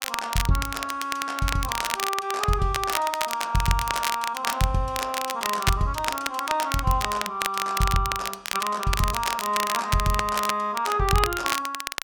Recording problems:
crackling; vinyl, SNR 4 dB

